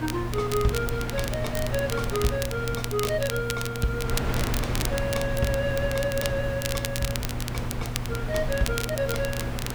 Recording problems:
hum; 60 Hz, harmonics up to 960 Hz, SNR 5 dB
hiss; SNR 23 dB
wind noise; below 450 Hz, SNR 4 dB
crackle; vinyl, SNR 6 dB

